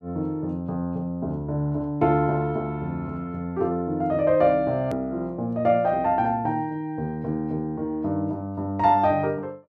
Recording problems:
edit click; at 5 s

